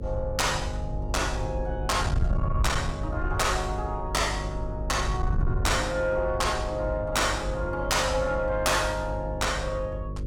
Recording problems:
distorted audio; soft clipping, signal-to-distortion ratio 11 dB
hum; 50 Hz, harmonics up to 550 Hz, SNR 8 dB
wind on the microphone; below 100 Hz, SNR 6 dB

